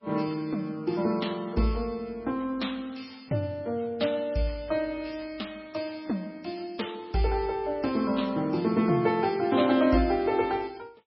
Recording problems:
lossy compression; MP3, log-spectral distance 3 dB, nothing above 4.6 kHz

